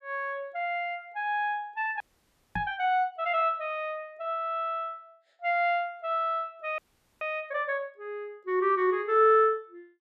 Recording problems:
audio freezing; at 2 s for 0.5 s and at 7 s
knock on the microphone; at 2.5 s; peak -4 dB vs average level

